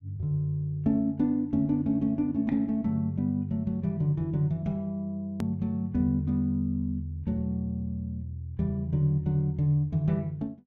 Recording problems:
click at an edit; at 5.5 s

